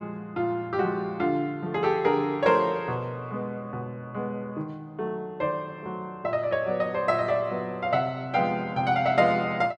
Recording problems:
none

